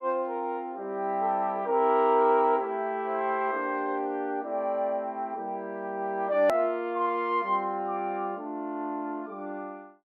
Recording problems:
hard cut with a click; at 6.5 s

